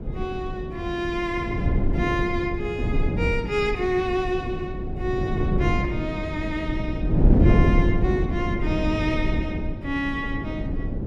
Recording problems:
wind on the microphone; below 210 Hz, SNR -2 dB

